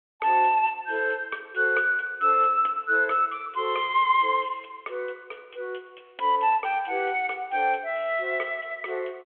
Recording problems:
telephone audio; 320 Hz to 3.4 kHz, G.726

